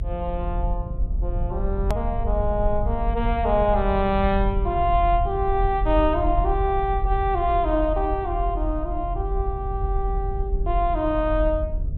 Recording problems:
low-pass filter; nothing above 4 kHz
electrical hum; 60 Hz, harmonics up to 660 Hz, SNR 20 dB
low-frequency rumble; below 60 Hz, strongest tone 40 Hz, SNR 4 dB
edit click; at 2 s

